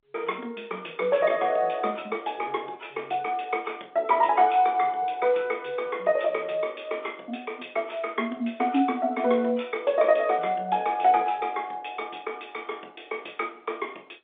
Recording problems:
telephone audio; 260 Hz to 3.6 kHz, G.711

